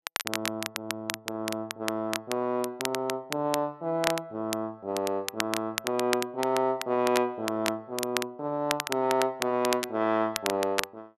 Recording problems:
crackle; vinyl, SNR 5 dB

